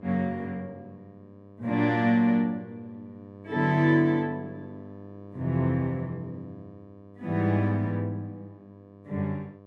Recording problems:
electrical hum; 50 Hz, harmonics up to 1.2 kHz, SNR 20 dB

